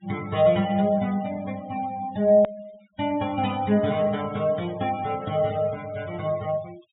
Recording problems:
treble missing; nothing above 4 kHz
noise reduction artefacts; signal-to-artefact ratio 20 dB
edit click; at 2.5 s

